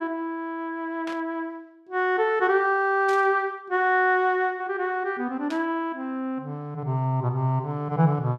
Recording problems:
static burst; at 1 s, at 3 s and at 5.5 s; peak -10 dB vs average level

